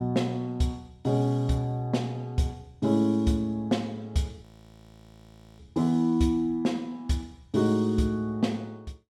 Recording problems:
frozen audio; at 4.5 s for 1 s

